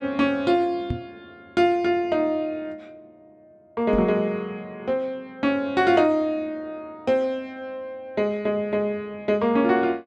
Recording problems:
microphone bump; at 1 s and at 4 s; peak 0 dB vs average level

